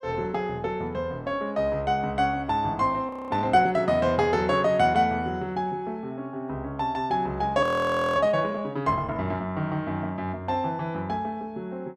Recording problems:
audio freezing; at 3 s and at 7.5 s for 0.5 s

